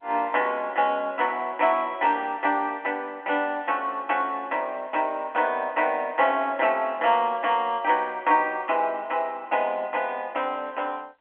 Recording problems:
phone line; 170 Hz to 3.3 kHz, G.711

